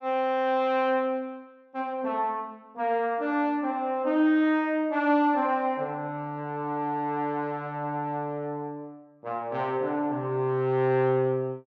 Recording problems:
none

